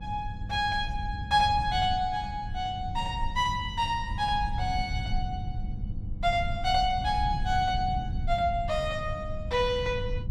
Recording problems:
hum; 50 Hz, harmonics up to 800 Hz, SNR 17 dB
low-frequency rumble; below 100 Hz, SNR 7 dB

